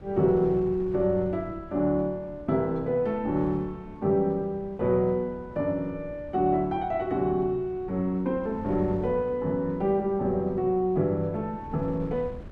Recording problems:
wind noise; below 220 Hz, SNR 18 dB

